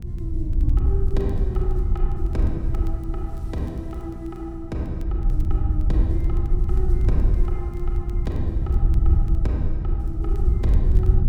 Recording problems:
electrical hum; 60 Hz, harmonics up to 480 Hz, SNR 9 dB
wind noise; below 72 Hz, SNR -8 dB
crackling; vinyl, SNR 28 dB

